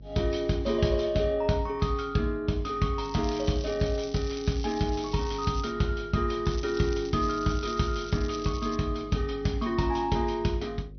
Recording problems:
treble missing; nothing above 6 kHz
lossy codec; MP3, log-spectral distance 5 dB
electrical hum; 50 Hz, harmonics up to 550 Hz, SNR 18 dB
crackle; from 3 to 5.5 s and from 6.5 to 9 s; loose cable, SNR 16 dB

